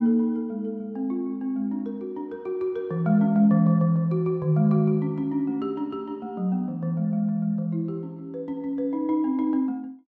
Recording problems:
none

